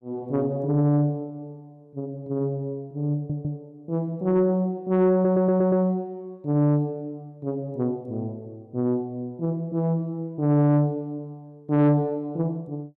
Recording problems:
distortion; soft clipping, signal-to-distortion ratio 11 dB
stutter; at 3 s and at 5 s

